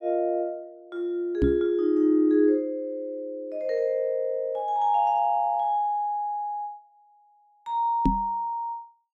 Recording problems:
knock on the microphone; at 1.5 s and at 8 s; peak +6 dB vs average level

